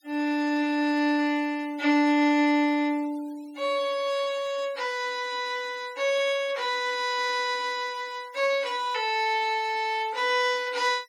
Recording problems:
noise reduction artefacts; signal-to-artefact ratio 24 dB

